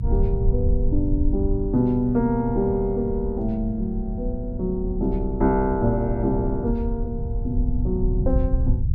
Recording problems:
rumble; below 78 Hz, SNR 3 dB

